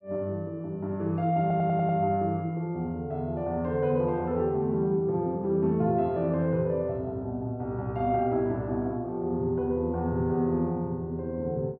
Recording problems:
stutter; at 1.5 s

